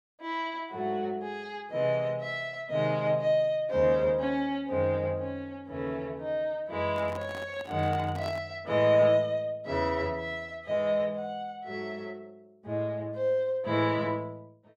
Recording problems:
handling noise; from 7 to 8.5 s; peak -8 dB vs average level

